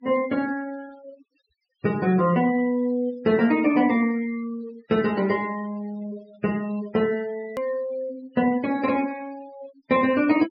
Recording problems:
treble missing; nothing above 5.5 kHz
noise reduction artefacts; signal-to-artefact ratio 20 dB
hard cut with a click; at 7.5 s

